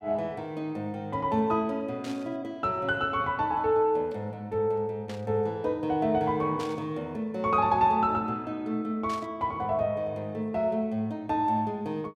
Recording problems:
burst of static; 4 times, first at 2 s; peak -10 dB vs average level

